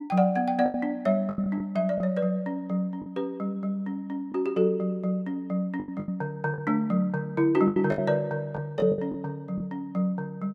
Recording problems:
packet loss; 7% of the sound replaced, filled with the last packet

